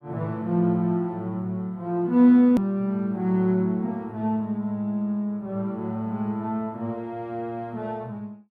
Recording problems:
edit click; at 2.5 s

